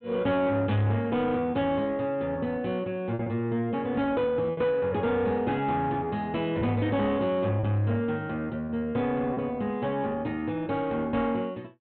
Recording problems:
treble missing; nothing above 4 kHz
distortion; soft clipping, signal-to-distortion ratio 10 dB
lost packets; 2% of the sound replaced, filled with repeated pitch periods

